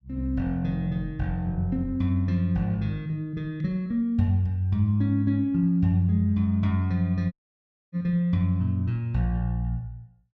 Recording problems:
dropout; at 7.5 s for 0.5 s

